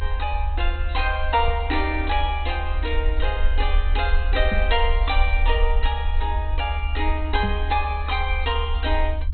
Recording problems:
codec artefacts; MP2, log-spectral distance 2 dB, nothing above 4.1 kHz
rumble; below 72 Hz, SNR 0 dB
microphone bump; at 1.5 s, at 4.5 s and at 7.5 s; peak +2 dB vs average level

